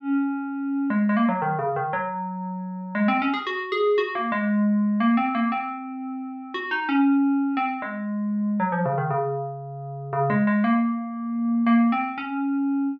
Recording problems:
none

